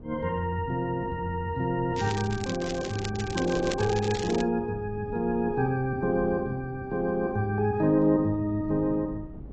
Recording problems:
codec artefacts; AAC, log-spectral distance 2 dB
wind on the microphone; below 250 Hz, SNR 15 dB
crackle; from 2 to 4.5 s; loose cable, SNR 12 dB

